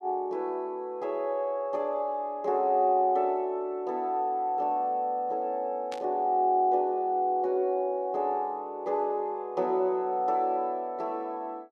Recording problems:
static burst; at 6 s; peak -9 dB vs average level

